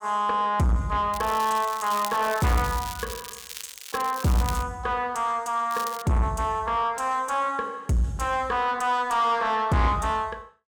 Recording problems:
distortion; soft clipping, signal-to-distortion ratio 8 dB
crackle; from 1 to 4.5 s and at 5.5 s; loose cable, SNR 13 dB

